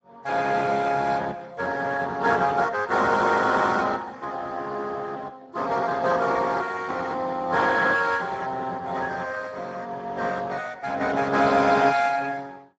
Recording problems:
lossy compression; Speex, log-spectral distance 4 dB, nothing above 7.3 kHz

